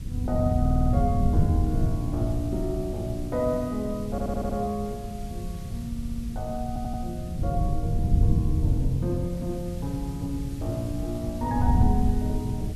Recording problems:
background hiss; slope +2 dB per octave, SNR 19 dB
wind noise; below 120 Hz, SNR -1 dB
audio stuttering; 4 times, first at 0.5 s

